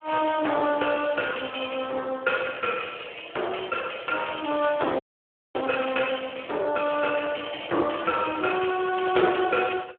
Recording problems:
telephone audio; 320 Hz to 3.4 kHz, Speex
frozen audio; at 5 s for 0.5 s

